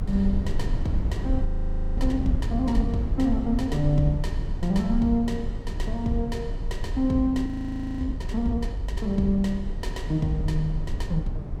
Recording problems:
rumble; below 78 Hz, strongest tone 30 Hz, SNR 4 dB
audio freezing; at 1.5 s for 0.5 s and at 7.5 s for 0.5 s

